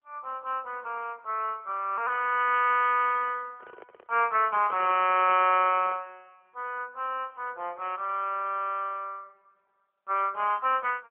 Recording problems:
telephone audio; 300 Hz to 3.1 kHz, AMR-NB
microphone handling noise; from 3.5 to 6 s; peak -13 dB vs average level

